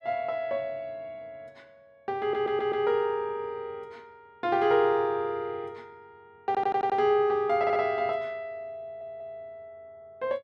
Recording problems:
stutter; 4 times, first at 2 s

